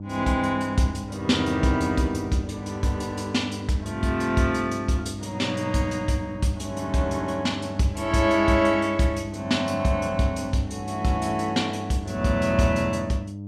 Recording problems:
mains hum; 50 Hz, harmonics up to 600 Hz, SNR 11 dB

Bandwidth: 14 kHz